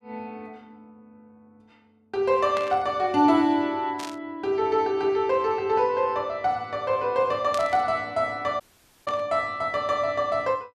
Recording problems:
static burst; 4 times, first at 2.5 s; peak -6 dB vs average level
dropout; at 8.5 s

